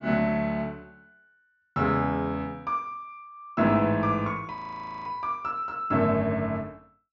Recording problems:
treble cut off; nothing above 7 kHz
frozen audio; at 4.5 s for 0.5 s

